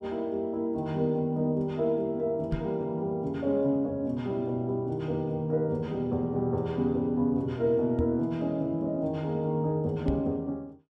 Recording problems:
knock on the microphone; at 2.5 s, at 8 s and at 10 s; peak +1 dB vs average level

